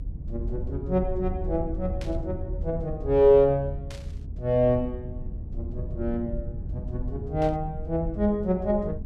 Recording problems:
rumble; below 90 Hz, SNR 9 dB
burst of static; at 2 s, at 4 s and at 7.5 s; peak -12 dB vs average level

